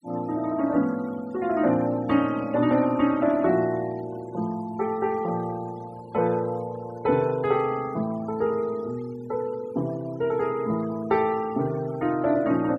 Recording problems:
noise reduction artefacts; signal-to-artefact ratio 21 dB

